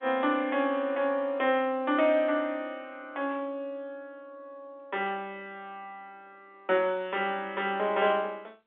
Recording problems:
telephone audio; 220 Hz to 3.6 kHz, G.711

